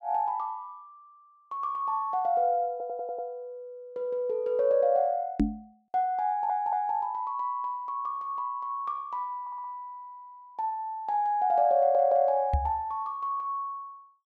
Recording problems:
stutter; 4 times, first at 2.5 s
knock on the microphone; at 5.5 s and at 13 s; peak +7 dB vs average level

